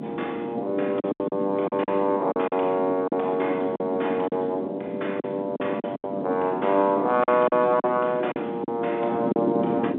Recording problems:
phone line; 220 Hz to 3.6 kHz, G.711
wind noise; below 390 Hz, SNR 8 dB
lost packets; 9% of the sound replaced, filled with silence

